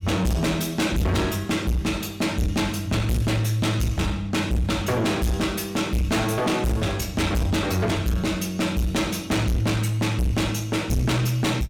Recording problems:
distortion; soft clipping, signal-to-distortion ratio 6 dB

